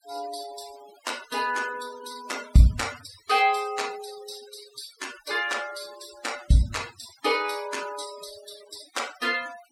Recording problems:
denoising artefacts; signal-to-artefact ratio 15 dB

